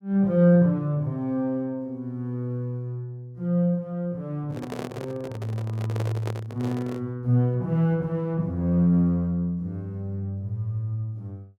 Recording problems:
microphone handling noise; from 4.5 to 7 s; peak -4 dB vs average level

